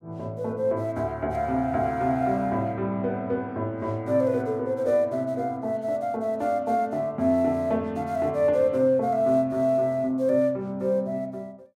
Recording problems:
none

